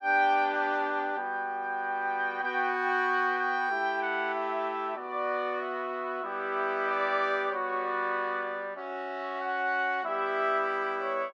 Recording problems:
none

